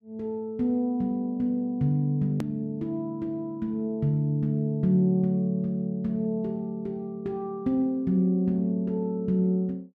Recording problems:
click at an edit; at 2.5 s

